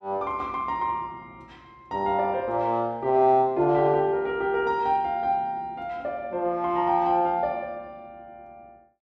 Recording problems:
none

